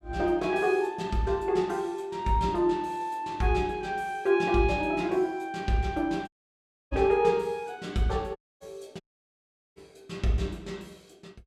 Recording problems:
dropout; at 6.5 s for 0.5 s, at 8.5 s and at 9 s for 1 s

